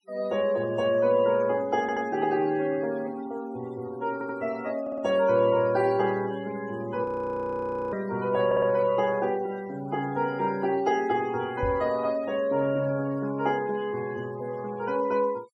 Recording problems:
noise reduction artefacts; signal-to-artefact ratio 22 dB
audio stuttering; 4 times, first at 2 s
frozen audio; at 7 s for 1 s
microphone bump; at 12 s; peak -3 dB vs average level

